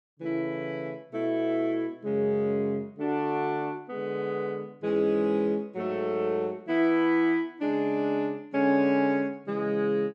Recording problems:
none

